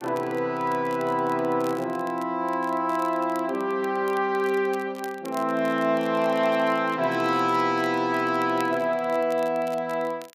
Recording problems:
crackling; vinyl, SNR 24 dB

